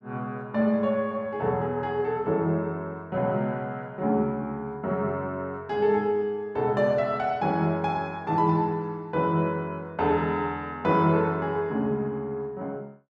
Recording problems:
none

